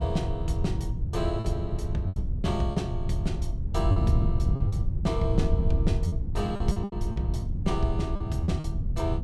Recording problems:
wind on the microphone; below 110 Hz, SNR -3 dB
lost packets; 8% of the sound replaced, filled with repeated pitch periods

